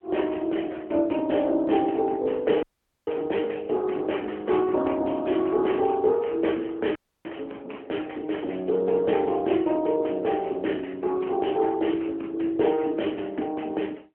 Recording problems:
telephone audio; 240 Hz to 3.3 kHz, AMR-NB
dropout; at 2.5 s and at 7 s

